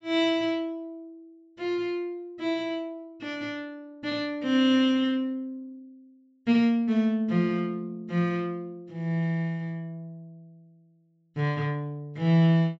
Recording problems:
low-pass filter; nothing above 8 kHz

